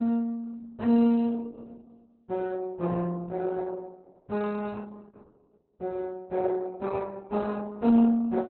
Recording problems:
codec artefacts; Opus, log-spectral distance 3 dB, nothing above 4.1 kHz

